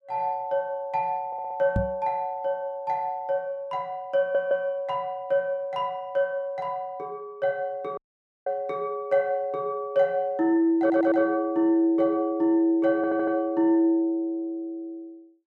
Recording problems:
stutter; 4 times, first at 1.5 s
microphone bump; at 2 s; peak +3 dB vs average level
dropout; at 8 s

